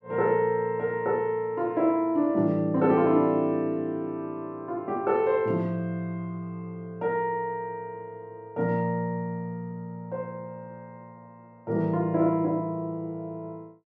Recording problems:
none

